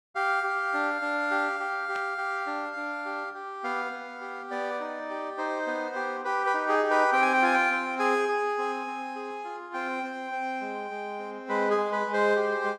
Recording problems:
burst of static; at 2 s; peak -11 dB vs average level

